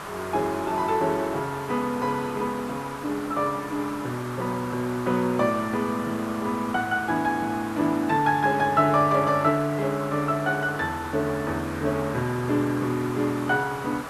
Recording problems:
hiss; SNR 11 dB

